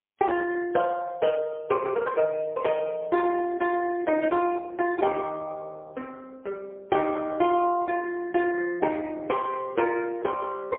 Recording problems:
phone line; 280 Hz to 3.5 kHz, AMR-NB, then MP3

